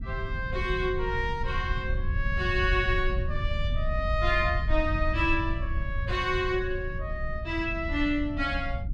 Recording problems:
low-frequency rumble; below 120 Hz, SNR 9 dB
wind on the microphone; below 76 Hz, SNR 5 dB

